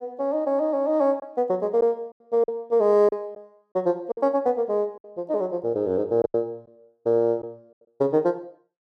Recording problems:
packet loss; 5% of the sound replaced, filled with silence

